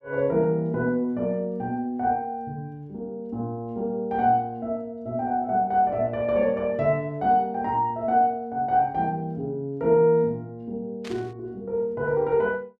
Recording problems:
burst of static; at 11 s; peak -11 dB vs average level

